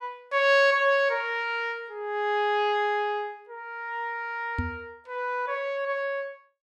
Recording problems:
microphone thump; at 4.5 s; peak 0 dB vs average level

